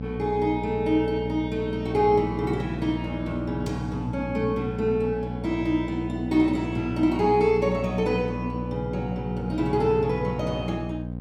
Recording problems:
hum; 60 Hz, harmonics up to 780 Hz, SNR 7 dB

